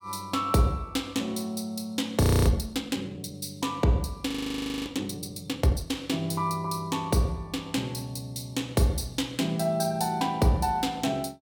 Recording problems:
frozen audio; at 2 s and at 4.5 s for 0.5 s

